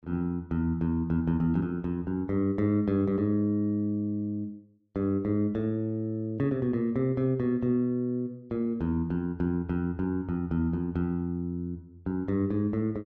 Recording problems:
none

